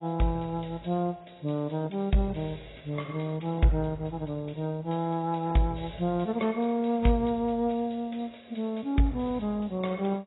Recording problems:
codec artefacts; AAC, log-spectral distance 7 dB, nothing above 3.8 kHz

